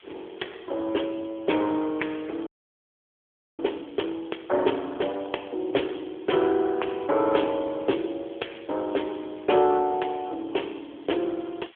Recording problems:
telephone audio; 280 Hz to 3.4 kHz, AMR-NB
hiss; SNR 27 dB
audio freezing; at 2.5 s for 1 s

